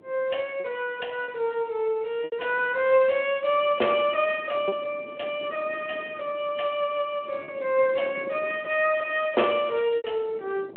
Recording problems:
phone line; 320 Hz to 3.2 kHz, Speex
wind noise; below 590 Hz, SNR 20 dB
lost packets; 3% of the sound replaced, filled with repeated pitch periods

